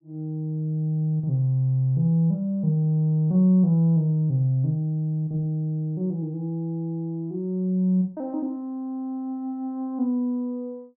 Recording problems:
none

